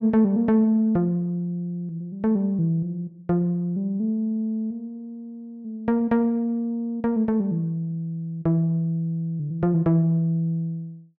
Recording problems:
none

